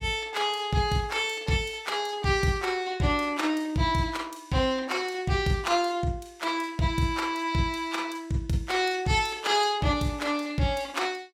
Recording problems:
none

